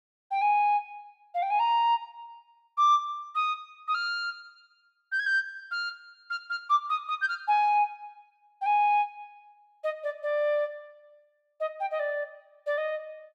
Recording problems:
none

